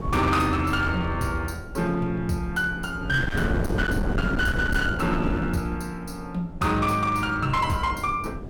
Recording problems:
distorted audio; hard clipping, uneven, signal-to-distortion ratio 11 dB
wind noise; below 330 Hz, SNR 6 dB

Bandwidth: 17.5 kHz